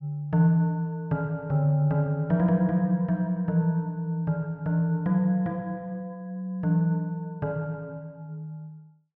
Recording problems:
none

